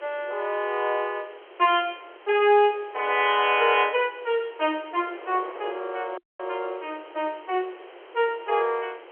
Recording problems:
telephone audio; 320 Hz to 3.3 kHz, G.711
background hiss; SNR 27 dB
wind on the microphone; below 960 Hz, SNR 21 dB
dropout; at 6 s

